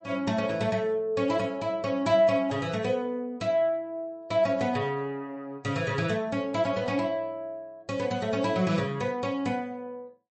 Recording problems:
lossy codec; MP3, log-spectral distance 2 dB, nothing above 8.2 kHz

